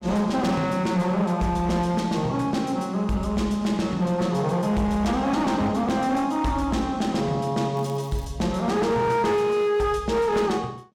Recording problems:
distortion; hard clipping, signal-to-distortion ratio 12 dB
crackle; at 8 s; loose cable, SNR 27 dB

